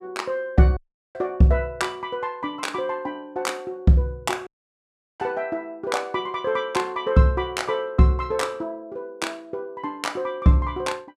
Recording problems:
dropout; at 1 s and at 4.5 s for 0.5 s

